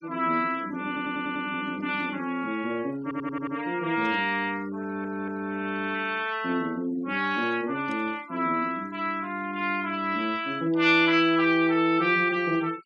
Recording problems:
noise reduction artefacts; signal-to-artefact ratio 24 dB
stutter; at 1 s, at 3 s and at 5 s
burst of static; at 2 s, at 4 s and at 8 s; peak -19 dB vs average level

